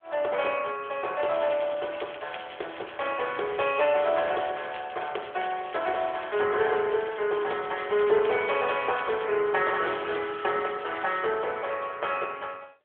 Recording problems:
phone line; 340 Hz to 3.4 kHz, AMR-NB
crackle; from 1.5 to 6.5 s, from 6.5 to 9.5 s and from 9.5 to 11 s; loose cable, SNR 17 dB

